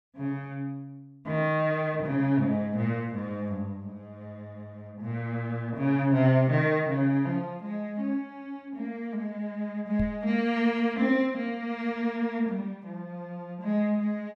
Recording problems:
microphone bump; at 10 s; peak -1 dB vs average level

